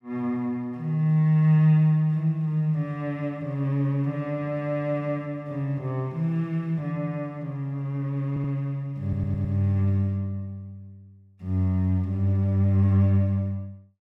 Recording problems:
stutter; at 8.5 s and at 9 s

